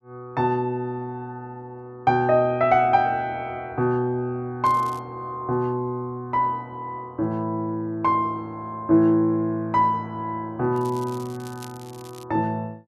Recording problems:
crackle; at 4.5 s and from 11 to 12 s; loose cable, SNR 23 dB

